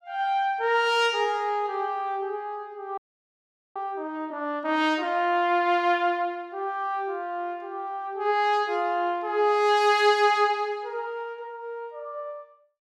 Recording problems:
frozen audio; at 3 s for 1 s

